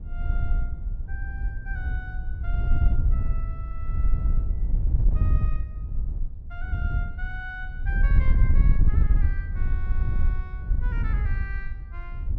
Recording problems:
wind on the microphone; below 70 Hz, SNR -14 dB

